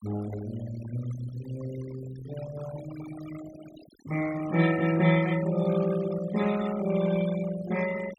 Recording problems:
denoising artefacts; signal-to-artefact ratio 14 dB

